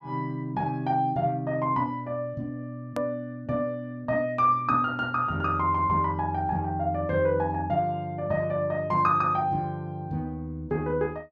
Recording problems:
hard cut with a click; at 3 s

